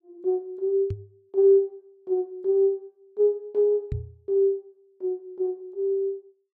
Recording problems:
microphone bump; at 1 s and at 4 s; peak -2 dB vs average level

